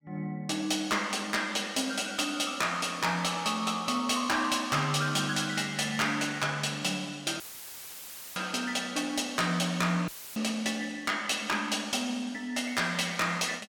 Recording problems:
distorted audio; hard clipping, signal-to-distortion ratio 12 dB
dropout; at 7.5 s for 1 s and at 10 s; filled with static

